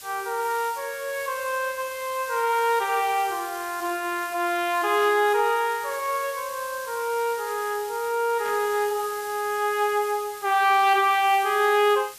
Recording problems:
hiss; slope +2 dB per octave, SNR 15 dB
burst of static; at 5 s and at 8.5 s; peak -13 dB vs average level

